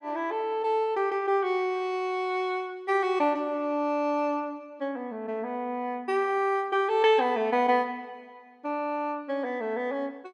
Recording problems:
none

